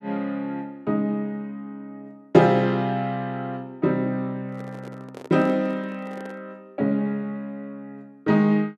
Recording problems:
handling noise; from 4.5 to 6.5 s; peak -12 dB vs average level

